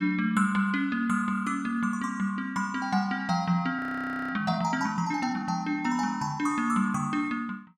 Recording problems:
frozen audio; at 4 s for 0.5 s

